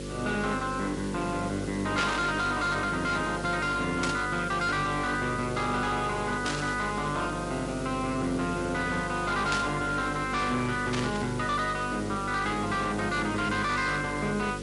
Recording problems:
codec artefacts; MP3, log-spectral distance 7 dB, nothing above 11 kHz
distorted audio; hard clipping, uneven, signal-to-distortion ratio 11 dB
hum; 50 Hz, harmonics up to 550 Hz, SNR 8 dB
hiss; SNR 15 dB
burst of static; 5 times, first at 2 s; peak +2 dB vs average level

